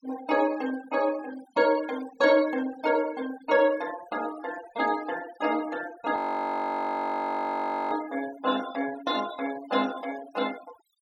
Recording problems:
denoising artefacts; signal-to-artefact ratio 17 dB
frozen audio; at 6 s for 2 s

